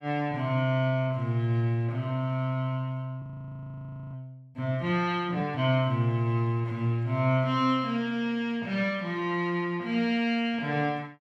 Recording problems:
frozen audio; at 3 s for 1 s

